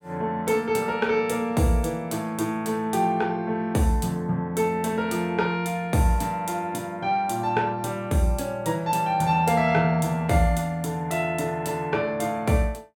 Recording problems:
none

